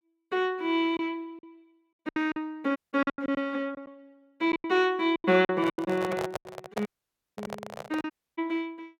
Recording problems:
packet loss; 11% of the sound replaced, filled with silence
dropout; at 3 s, at 7 s for 0.5 s and at 8 s
microphone handling noise; from 5.5 to 8 s; peak -1 dB vs average level

